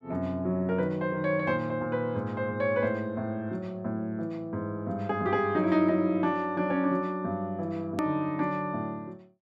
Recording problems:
click at an edit; at 8 s

